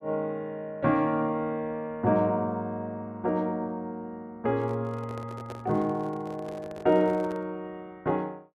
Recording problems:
handling noise; from 4.5 to 7.5 s; peak -8 dB vs average level

